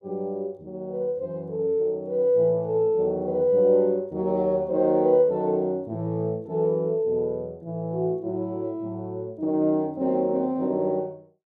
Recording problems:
none

